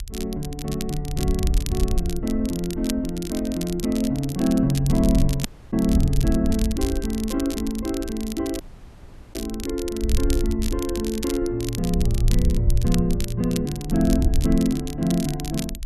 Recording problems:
wind on the microphone; below 68 Hz, SNR 5 dB
crackle; vinyl, SNR 12 dB
dropout; at 5.5 s and at 8.5 s for 1 s

